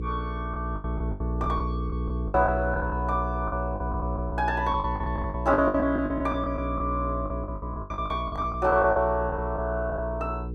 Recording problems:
hum; 60 Hz, harmonics up to 480 Hz, SNR 5 dB
lost packets; 16% of the sound replaced, filled with the last packet

